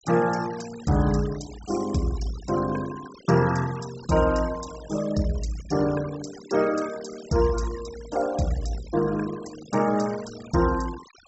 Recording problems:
treble missing; nothing above 7.7 kHz
denoising artefacts; signal-to-artefact ratio 17 dB

